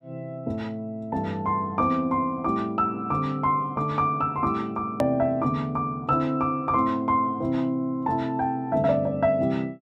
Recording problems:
hard cut with a click; at 5 s

